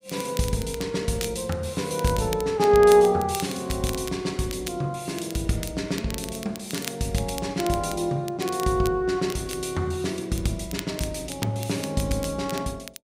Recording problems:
crackling; vinyl, SNR 14 dB

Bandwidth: 15.5 kHz